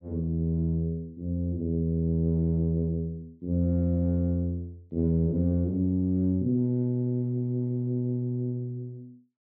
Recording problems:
none

